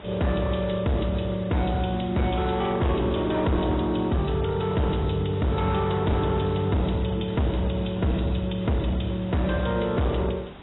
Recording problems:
codec artefacts; AAC, log-spectral distance 8 dB, nothing above 3.9 kHz
distortion; hard clipping, signal-to-distortion ratio 7 dB
background hiss; SNR 19 dB

